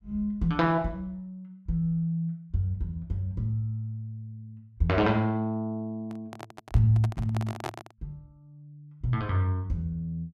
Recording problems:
handling noise; from 6 to 8 s; peak -1 dB vs average level

